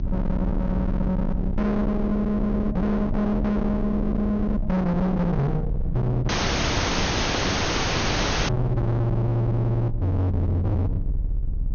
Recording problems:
low-pass filter; nothing above 6.5 kHz
distortion; hard clipping, uneven, signal-to-distortion ratio 6 dB
low-frequency rumble; below 180 Hz, SNR 5 dB
dropout; at 6.5 s for 2 s

